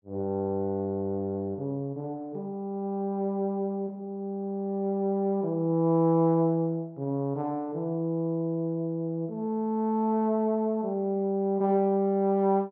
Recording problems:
none

